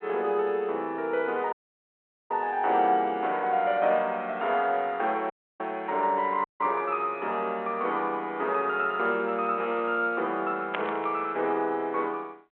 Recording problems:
telephone audio; 300 Hz to 3.6 kHz, G.726
dropout; at 1.5 s for 1 s, at 5.5 s and at 6.5 s
burst of static; at 11 s; peak -2 dB vs average level

